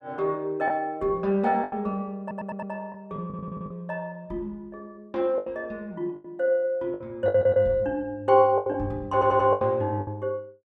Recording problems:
lost packets; 8% of the sound replaced, filled with the last packet
stutter; 4 times, first at 2 s

